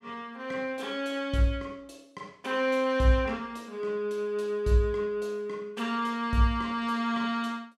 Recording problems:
none

